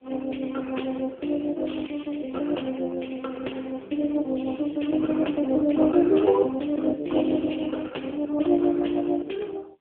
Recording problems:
telephone audio; 260 Hz to 3.3 kHz, AMR-NB

